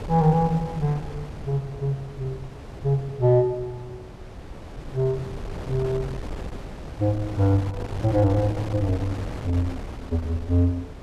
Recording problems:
wind on the microphone; below 420 Hz, SNR 12 dB

